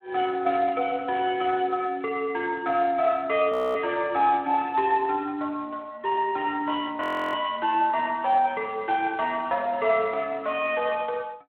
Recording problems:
telephone audio; 280 Hz to 3.5 kHz, Speex
frozen audio; at 3.5 s and at 7 s

